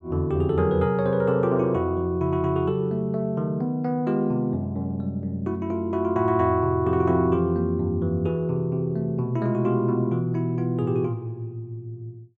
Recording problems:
none

